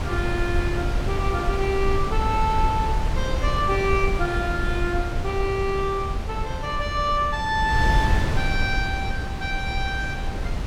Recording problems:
wind on the microphone; below 130 Hz, SNR 1 dB

